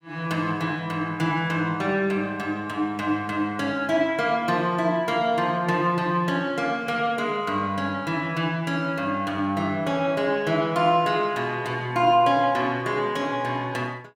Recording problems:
none

